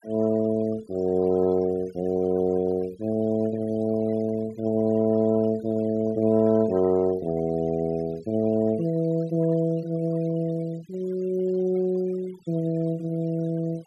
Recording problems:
noise reduction artefacts; signal-to-artefact ratio 24 dB

